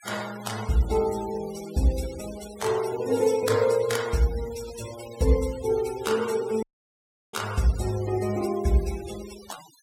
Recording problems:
noise reduction artefacts; signal-to-artefact ratio 15 dB
audio cutting out; at 6.5 s for 0.5 s

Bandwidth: 16.5 kHz